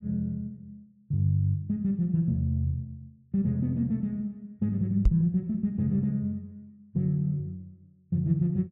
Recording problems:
knock on the microphone; at 5 s; peak +8 dB vs average level

